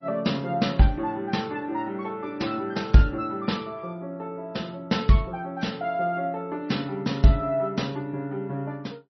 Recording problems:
lossy compression; MP3, log-spectral distance 2 dB, nothing above 5.7 kHz

